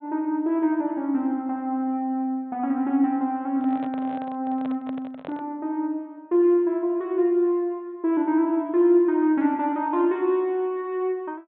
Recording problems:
treble cut off; nothing above 4 kHz
handling noise; from 3.5 to 5.5 s; peak -10 dB vs average level

